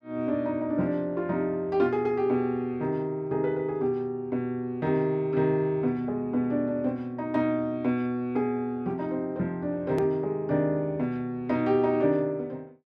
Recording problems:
edit click; at 10 s

